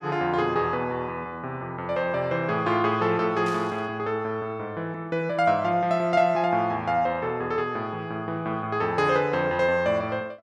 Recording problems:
burst of static; at 3.5 s; peak -12 dB vs average level

